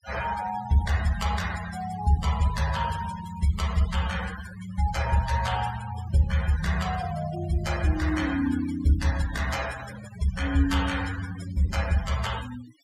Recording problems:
denoising artefacts; signal-to-artefact ratio 13 dB

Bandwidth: 16 kHz